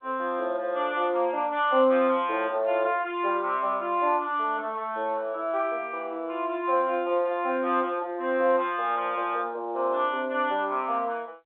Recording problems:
telephone audio; 220 Hz to 3.8 kHz, G.711

